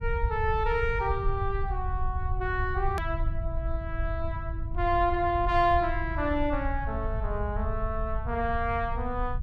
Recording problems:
rumble; below 78 Hz, SNR 4 dB
edit click; at 3 s

